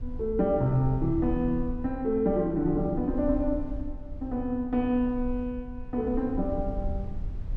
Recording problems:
rumble; below 66 Hz, SNR 11 dB

